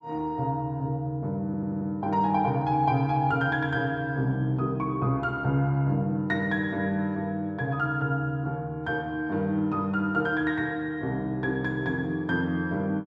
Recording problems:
audio stuttering; at 1.5 s

